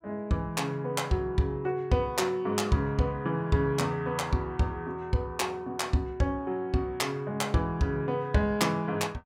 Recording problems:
none

